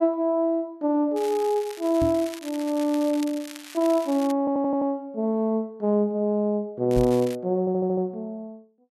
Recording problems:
crackling; from 1 to 4.5 s and at 7 s; loose cable, SNR 18 dB
microphone thump; at 2 s and at 7 s; peak 0 dB vs average level
stutter; at 4.5 s and at 7.5 s

